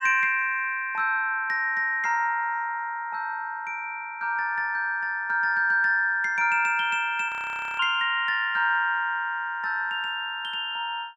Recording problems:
audio freezing; at 7.5 s for 0.5 s

